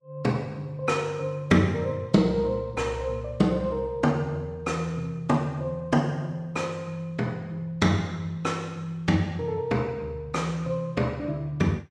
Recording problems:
lossy codec; Vorbis, log-spectral distance 2 dB

